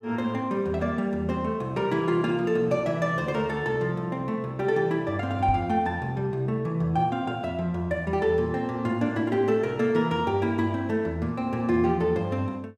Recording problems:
microphone bump; at 5.5 s; peak -1 dB vs average level

